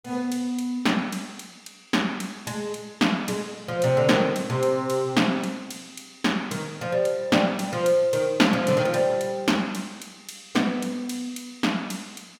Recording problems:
none

